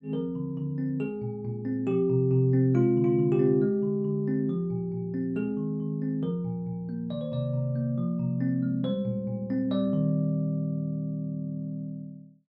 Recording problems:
none

